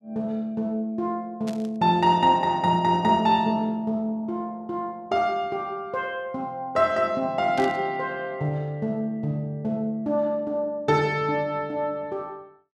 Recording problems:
static burst; at 1.5 s and at 7.5 s; peak -10 dB vs average level

